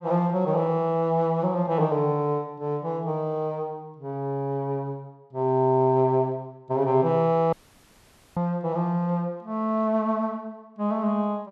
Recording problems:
dropout; at 7.5 s for 1 s

